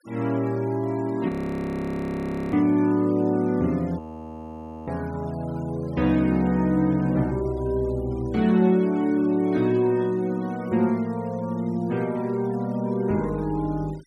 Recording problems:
noise reduction artefacts; signal-to-artefact ratio 27 dB
frozen audio; at 1.5 s for 1 s and at 4 s for 1 s

